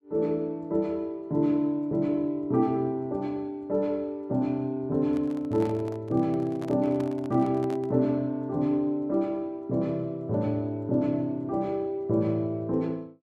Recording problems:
microphone handling noise; from 5 to 8 s; peak -8 dB vs average level

